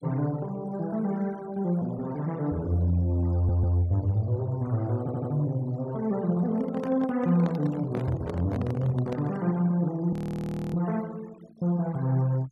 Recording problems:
denoising artefacts; signal-to-artefact ratio 24 dB
audio stuttering; at 3.5 s and at 5 s
handling noise; from 6.5 to 9.5 s; peak -3 dB vs average level
audio freezing; at 10 s for 0.5 s

